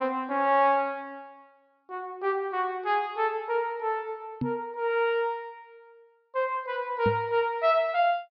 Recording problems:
treble cut off; nothing above 5.5 kHz
knock on the microphone; at 4.5 s and at 7 s; peak +1 dB vs average level

